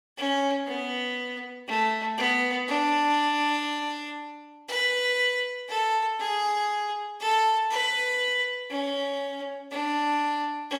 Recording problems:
none

